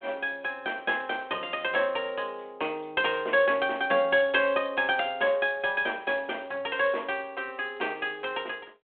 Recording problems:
phone line; 320 Hz to 3.5 kHz, G.726

